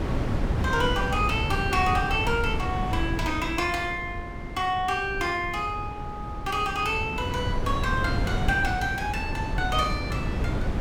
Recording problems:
wind noise; below 260 Hz, SNR 4 dB

